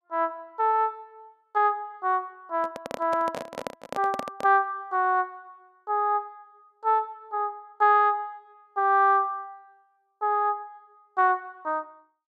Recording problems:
handling noise; from 2.5 to 4.5 s; peak -3 dB vs average level

